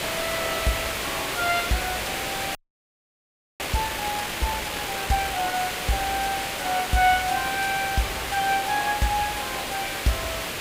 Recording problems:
background hiss; SNR 1 dB
frozen audio; at 2.5 s for 1 s

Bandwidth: 15.5 kHz